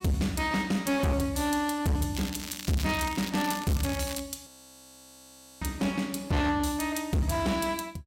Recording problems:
distorted audio; hard clipping, uneven, signal-to-distortion ratio 8 dB
crackling; from 2 to 4 s; loose cable, SNR 10 dB
audio freezing; at 4.5 s for 1 s

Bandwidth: 16 kHz